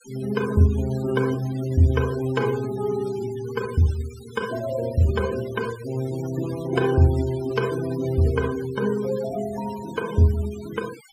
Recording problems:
noise reduction artefacts; signal-to-artefact ratio 17 dB

